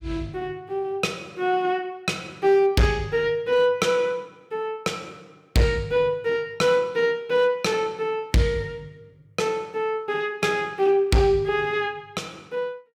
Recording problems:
distortion; hard clipping, signal-to-distortion ratio 11 dB

